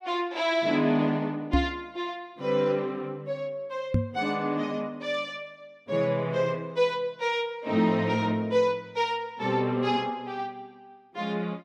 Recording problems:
knock on the microphone; at 1.5 s and at 4 s; peak +7 dB vs average level

